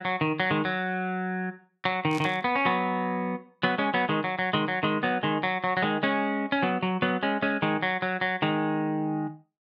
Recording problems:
burst of static; at 2 s; peak -10 dB vs average level

